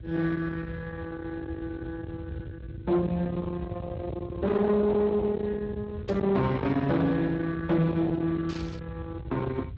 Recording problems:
lossy codec; Speex, log-spectral distance 2 dB
distorted audio; soft clipping, signal-to-distortion ratio 10 dB
rumble; below 420 Hz, SNR 10 dB
burst of static; at 6 s and at 8.5 s; peak -12 dB vs average level

